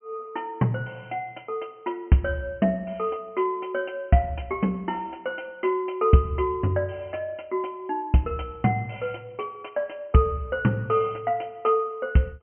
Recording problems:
treble cut off; nothing above 3.1 kHz

